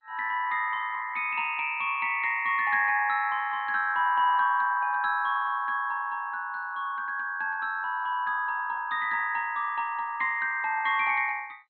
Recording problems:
codec artefacts; MP2, log-spectral distance 3 dB, nothing above 3.7 kHz

